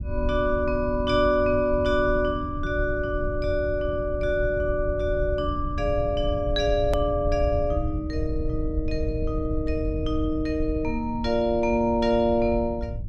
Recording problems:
rumble; below 88 Hz, SNR 7 dB
click at an edit; at 7 s

